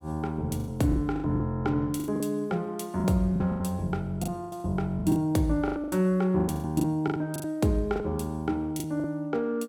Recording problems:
packet loss; 14% of the sound replaced, filled with the last packet

